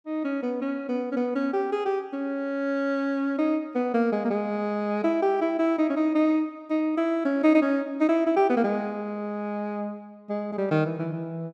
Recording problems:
none

